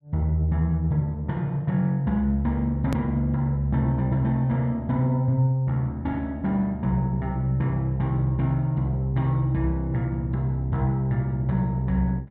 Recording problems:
edit click; at 3 s

